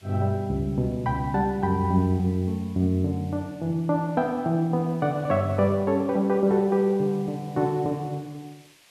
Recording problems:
background hiss; SNR 29 dB

